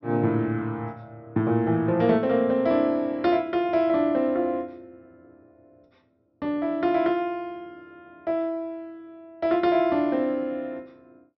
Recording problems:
treble cut off; nothing above 5.9 kHz

